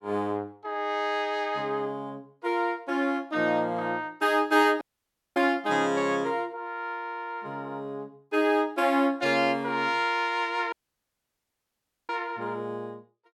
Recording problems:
dropout; at 5 s for 0.5 s and at 11 s for 1.5 s

